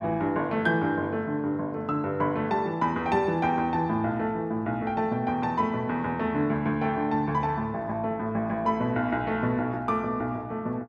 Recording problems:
none

